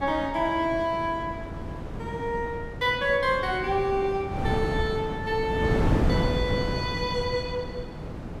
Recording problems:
wind on the microphone; below 360 Hz, SNR 4 dB

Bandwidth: 15 kHz